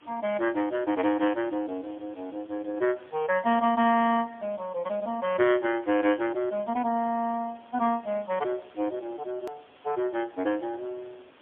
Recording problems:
telephone audio; 190 Hz to 3.2 kHz, AMR-NB, then MP3
background hiss; SNR 27 dB
edit click; at 9.5 s

